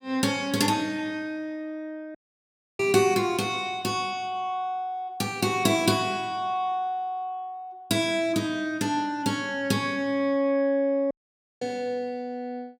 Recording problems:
dropout; at 2 s for 0.5 s and at 11 s for 0.5 s

